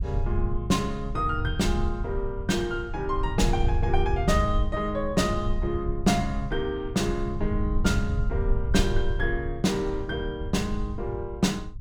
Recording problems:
low-frequency rumble; below 82 Hz, SNR 3 dB

